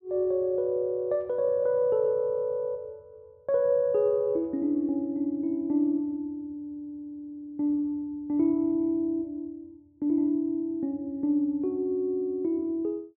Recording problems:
none

